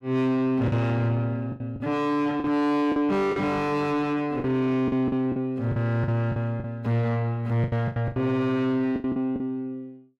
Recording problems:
distortion; soft clipping, signal-to-distortion ratio 7 dB
packet loss; 10% of the sound replaced, filled with the last packet

